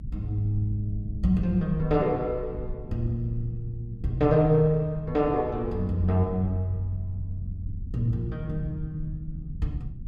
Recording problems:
low-frequency rumble; below 100 Hz, SNR 11 dB

